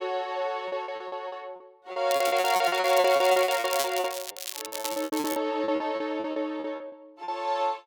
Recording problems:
packet loss; 20% of the sound replaced, filled with repeated pitch periods
crackling; from 2 to 5.5 s; loose cable, SNR 8 dB

